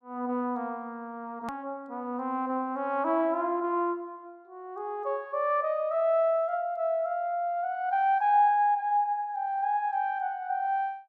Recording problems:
edit click; at 1.5 s

